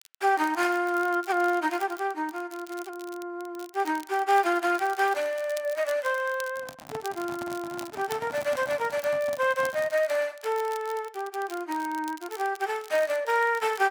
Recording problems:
crackling; vinyl, SNR 19 dB
handling noise; from 6.5 to 10 s; peak -7 dB vs average level

